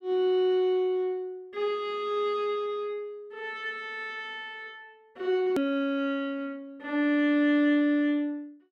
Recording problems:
click at an edit; at 5.5 s

